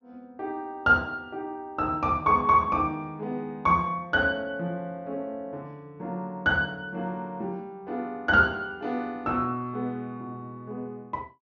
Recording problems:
low-pass filter; nothing above 7 kHz

